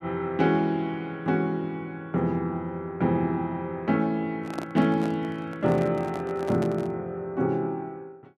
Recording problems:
microphone handling noise; from 4.5 to 7 s; peak -3 dB vs average level

